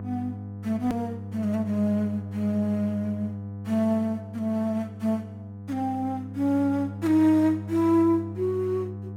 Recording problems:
electrical hum; 50 Hz, harmonics up to 700 Hz, SNR 10 dB
click at an edit; at 1 s

